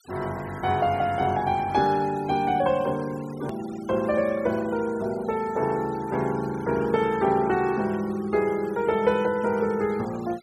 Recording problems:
denoising artefacts; signal-to-artefact ratio 21 dB
edit click; at 3.5 s

